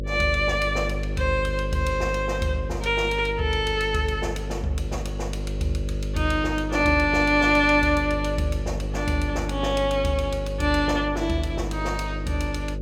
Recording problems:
hum; 50 Hz, harmonics up to 600 Hz, SNR 7 dB

